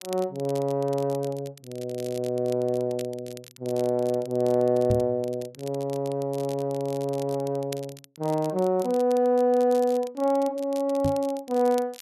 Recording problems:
crackling; vinyl, SNR 21 dB
microphone bump; at 5 s and at 11 s; peak +2 dB vs average level

